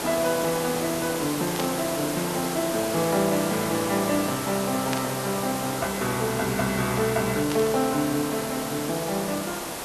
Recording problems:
hiss; slope -4 dB per octave, SNR 4 dB
burst of static; at 1.5 s, at 5 s and at 7.5 s; peak 0 dB vs average level

